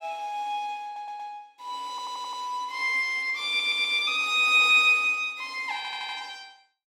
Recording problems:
stutter; 4 times, first at 1 s

